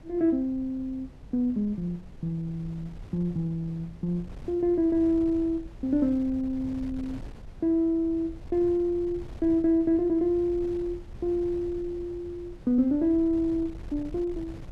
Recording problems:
wind on the microphone; below 130 Hz, SNR 17 dB

